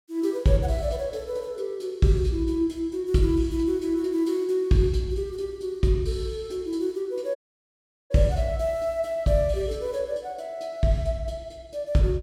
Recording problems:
dropout; at 7.5 s for 1 s

